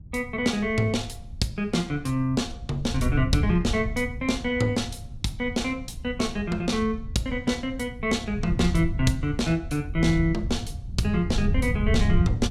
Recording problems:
wind on the microphone; below 110 Hz, SNR 5 dB

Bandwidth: 16 kHz